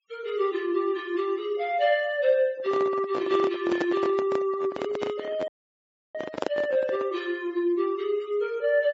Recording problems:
low-pass filter; nothing above 8 kHz
denoising artefacts; signal-to-artefact ratio 25 dB
microphone handling noise; from 2.5 to 7 s; peak +1 dB vs average level
audio cutting out; at 5.5 s for 0.5 s

